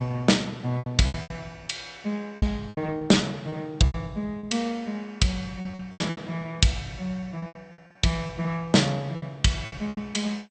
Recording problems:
lossy compression; MP2, log-spectral distance 2 dB, nothing above 8.5 kHz
packet loss; 13% of the sound replaced, filled with repeated pitch periods

